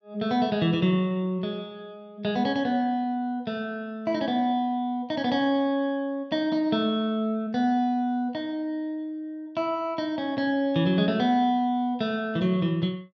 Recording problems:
none

